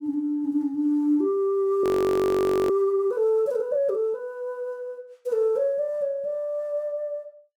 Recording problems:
audio freezing; at 2 s for 1 s

